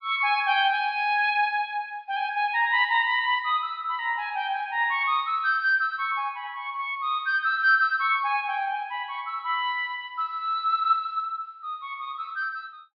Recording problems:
treble cut off; nothing above 5.5 kHz

